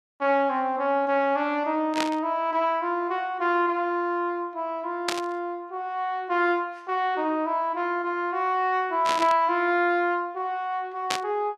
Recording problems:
burst of static; 4 times, first at 2 s; peak +3 dB vs average level

